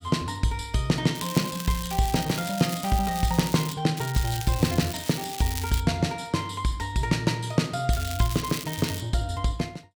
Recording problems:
crackling; from 1 to 3.5 s, from 4 to 6 s and from 8 to 9 s; loose cable, SNR 9 dB

